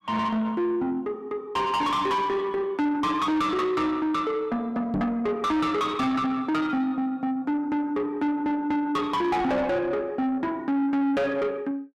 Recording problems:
distortion; soft clipping, signal-to-distortion ratio 7 dB
microphone thump; at 5 s; peak +1 dB vs average level

